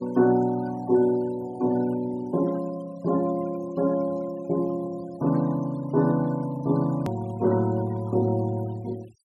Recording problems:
denoising artefacts; signal-to-artefact ratio 23 dB
edit click; at 7 s

